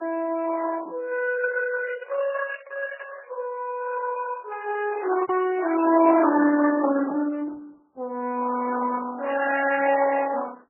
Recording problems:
lossy codec; Opus, then MP3, log-spectral distance 3 dB, nothing above 2.5 kHz
packet loss; 2% of the sound replaced, filled with repeated pitch periods

